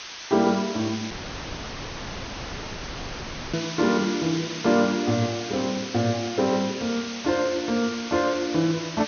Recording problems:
treble cut off; nothing above 6.4 kHz
hiss; slope +2 dB per octave, SNR 9 dB
audio cutting out; at 1 s for 2.5 s

